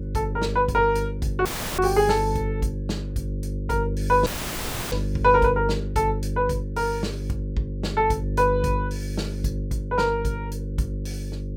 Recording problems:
electrical hum; 50 Hz, harmonics up to 550 Hz, SNR 5 dB
dropout; at 1.5 s and at 4.5 s for 0.5 s

